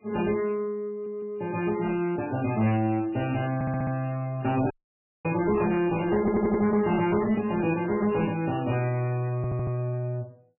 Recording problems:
lossy codec; MP3, then MP3, log-spectral distance 3 dB, nothing above 2.4 kHz
distorted audio; hard clipping, uneven, signal-to-distortion ratio 11 dB
stutter; 4 times, first at 1 s
audio cutting out; at 4.5 s for 0.5 s

